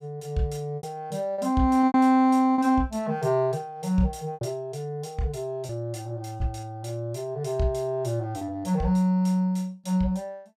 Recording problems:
lost packets; 4% of the sound replaced, filled with repeated pitch periods

